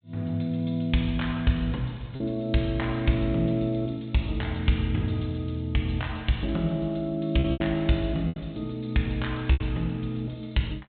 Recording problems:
treble missing; nothing above 4 kHz
lost packets; 3% of the sound replaced, filled with repeated pitch periods

